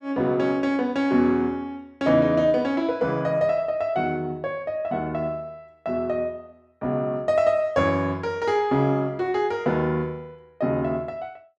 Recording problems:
none

